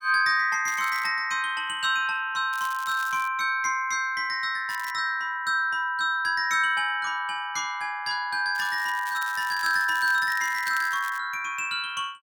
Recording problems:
crackle; 4 times, first at 0.5 s; loose cable, SNR 17 dB

